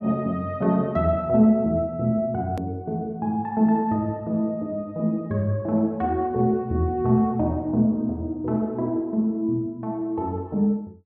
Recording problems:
edit click; at 2.5 s

